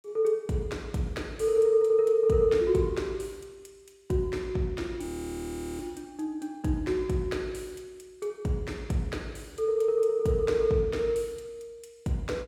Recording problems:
frozen audio; at 5 s for 0.5 s

